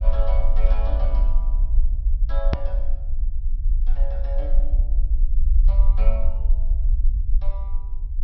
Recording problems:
low-pass filter; nothing above 5.8 kHz
rumble; below 44 Hz, strongest tone 20 Hz, SNR -13 dB
hard cut with a click; at 2.5 s

